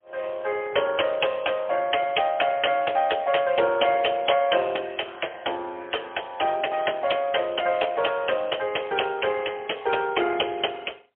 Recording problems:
telephone audio; 300 Hz to 3.3 kHz, AMR-NB, then MP3

